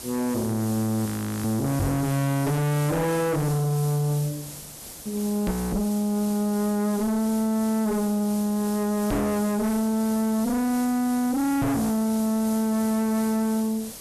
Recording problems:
distorted audio; soft clipping, signal-to-distortion ratio 5 dB
hiss; SNR 13 dB
audio freezing; at 1 s and at 5.5 s
microphone bump; 4 times, first at 2 s; peak +7 dB vs average level

